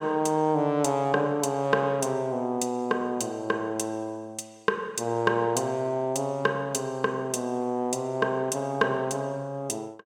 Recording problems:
none

